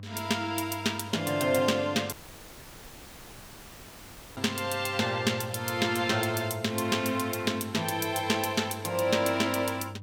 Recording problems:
electrical hum; 50 Hz, harmonics up to 500 Hz, SNR 16 dB
audio cutting out; at 2 s for 2 s

